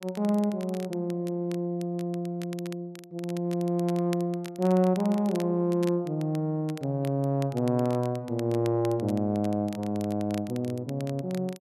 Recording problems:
crackle; vinyl, SNR 20 dB

